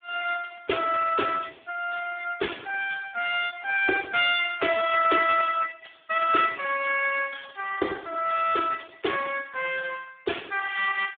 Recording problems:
telephone audio; 300 Hz to 3.6 kHz, Speex

